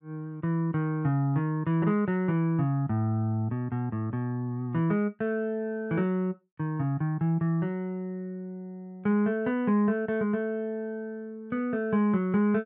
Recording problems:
none

